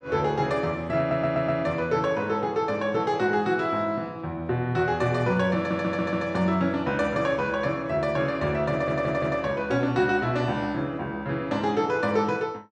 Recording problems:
stutter; at 1 s, at 5.5 s and at 8.5 s

